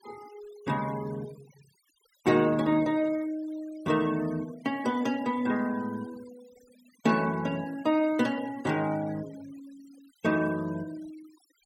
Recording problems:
denoising artefacts; signal-to-artefact ratio 21 dB

